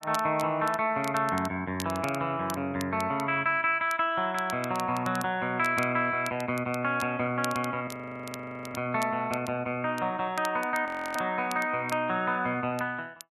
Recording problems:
crackling; vinyl, SNR 17 dB
audio freezing; at 8 s for 1 s and at 11 s

